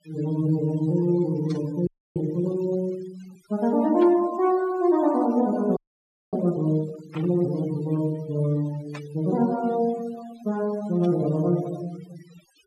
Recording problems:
denoising artefacts; signal-to-artefact ratio 21 dB
burst of static; 5 times, first at 1.5 s; peak -11 dB vs average level
audio freezing; at 2 s and at 6 s for 0.5 s

